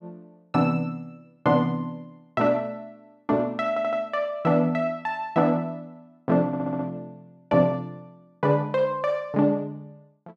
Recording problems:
stutter; at 3.5 s and at 6.5 s

